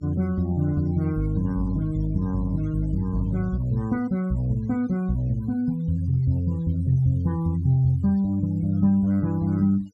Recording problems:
denoising artefacts; signal-to-artefact ratio 27 dB

